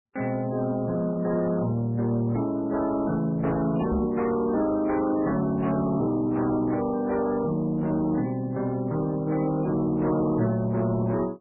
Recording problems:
lossy codec; MP3, log-spectral distance 2 dB, nothing above 10.7 kHz
distortion; soft clipping, signal-to-distortion ratio 12 dB
microphone thump; at 4 s; peak +3 dB vs average level

